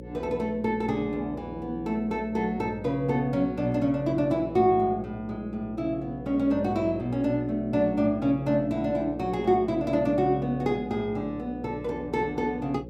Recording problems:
hum; 60 Hz, harmonics up to 540 Hz, SNR 14 dB

